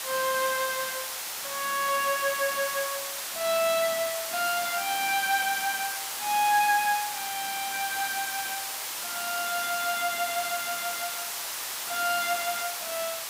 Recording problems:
hiss; SNR 3 dB

